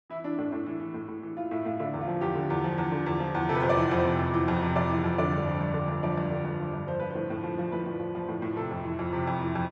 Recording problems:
none

